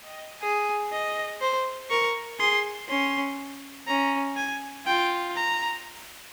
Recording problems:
hiss; SNR 17 dB

